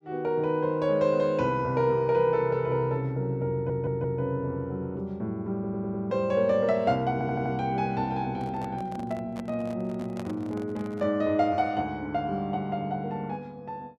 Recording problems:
stutter; at 3.5 s, at 5.5 s and at 7 s
handling noise; from 8.5 to 11 s; peak -7 dB vs average level

